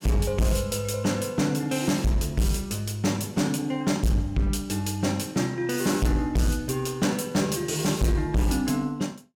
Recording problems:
distortion; hard clipping, signal-to-distortion ratio 7 dB

